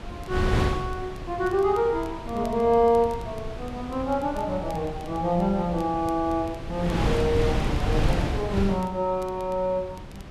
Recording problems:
wind noise; below 370 Hz, SNR 5 dB
crackling; vinyl, SNR 28 dB

